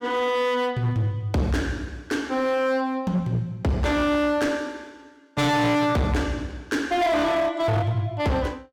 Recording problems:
distortion; hard clipping, uneven, signal-to-distortion ratio 7 dB

